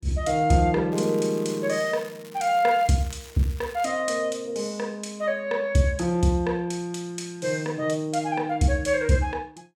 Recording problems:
crackling; from 1 to 4 s; loose cable, SNR 21 dB

